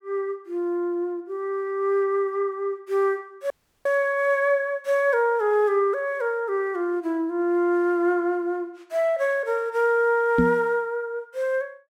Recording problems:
audio cutting out; at 3.5 s
knock on the microphone; at 10 s; peak +6 dB vs average level

